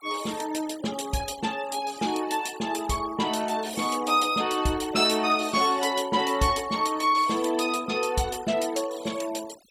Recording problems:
denoising artefacts; signal-to-artefact ratio 17 dB

